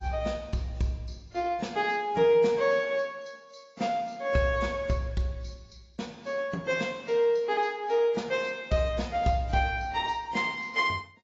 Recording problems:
lossy codec; AAC, log-spectral distance 3 dB, nothing above 7.3 kHz

